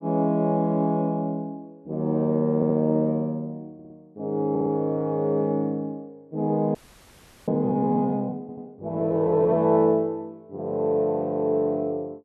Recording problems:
stutter; 4 times, first at 2.5 s
frozen audio; at 7 s for 0.5 s

